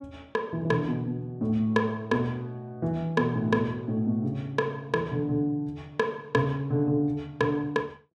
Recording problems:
none

